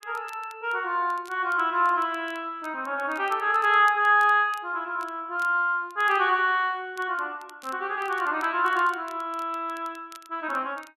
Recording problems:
crackle; vinyl, SNR 28 dB

